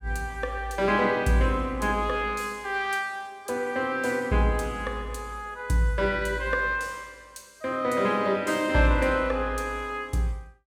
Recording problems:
none

